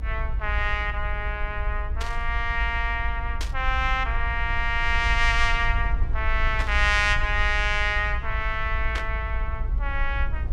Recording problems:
rumble; below 58 Hz, SNR 4 dB
burst of static; 4 times, first at 2 s; peak -3 dB vs average level

